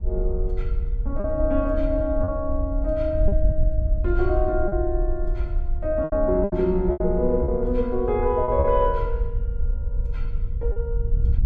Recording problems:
wind noise; below 58 Hz, SNR 3 dB
lost packets; 5% of the sound replaced, filled with repeated pitch periods

